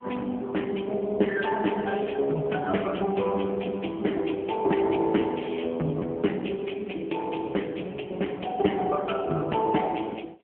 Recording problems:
phone line; 190 Hz to 3.2 kHz, AMR-NB

